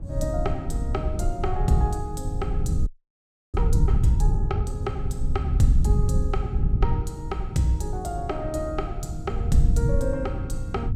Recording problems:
low-frequency rumble; below 100 Hz, SNR -3 dB
wind on the microphone; below 170 Hz, SNR 17 dB
audio freezing; at 3 s for 0.5 s

